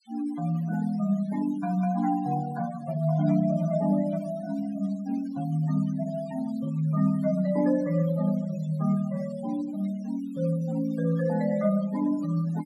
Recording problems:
noise reduction artefacts; signal-to-artefact ratio 20 dB

